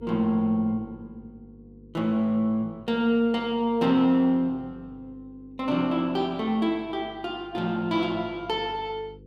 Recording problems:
electrical hum; 50 Hz, harmonics up to 500 Hz, SNR 24 dB

